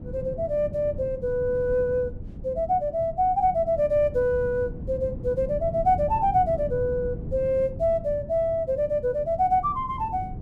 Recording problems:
wind on the microphone; below 180 Hz, SNR 12 dB

